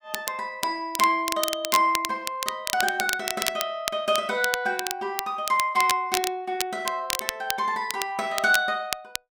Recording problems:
crackle; vinyl, SNR 5 dB

